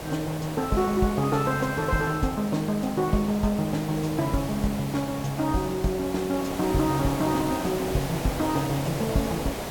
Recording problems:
hiss; SNR 8 dB

